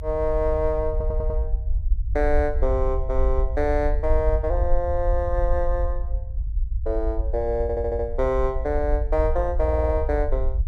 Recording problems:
rumble; below 60 Hz, SNR 2 dB
stutter; at 1 s, at 7.5 s and at 9.5 s

